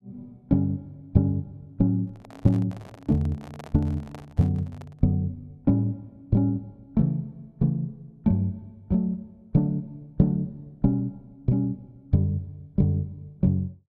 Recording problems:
microphone handling noise; from 2 to 5 s; peak -11 dB vs average level

